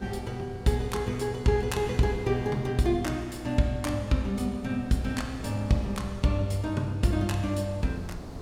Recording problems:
wind noise; below 390 Hz, SNR 17 dB

